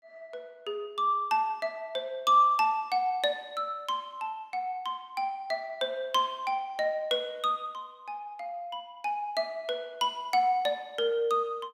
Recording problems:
none

